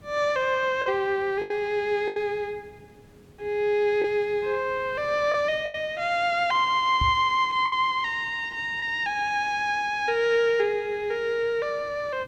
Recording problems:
hiss; slope -6 dB per octave, SNR 28 dB
packet loss; 3% of the sound replaced, filled with the last packet
microphone bump; at 7 s; peak 0 dB vs average level

